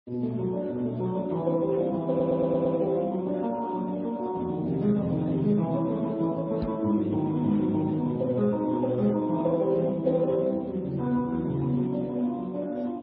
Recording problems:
lossy codec; Speex, then MP3, log-spectral distance 2 dB
stutter; at 2 s
microphone thump; at 6.5 s; peak -7 dB vs average level

